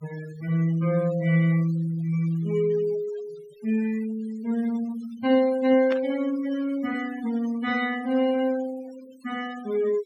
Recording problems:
denoising artefacts; signal-to-artefact ratio 19 dB
static burst; at 6 s; peak -6 dB vs average level

